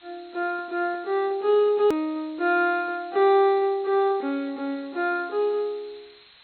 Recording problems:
treble missing; nothing above 4.2 kHz
hiss; SNR 27 dB
click at an edit; at 2 s

